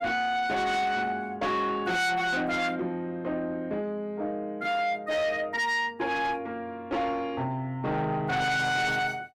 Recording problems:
distorted audio; soft clipping, signal-to-distortion ratio 8 dB

